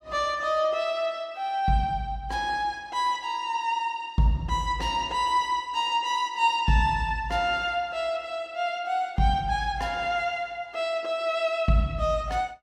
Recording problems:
none

